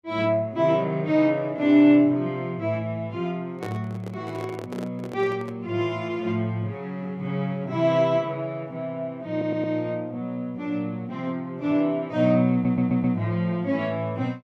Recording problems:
handling noise; from 3.5 to 5.5 s; peak -5 dB vs average level
stutter; at 9.5 s and at 13 s

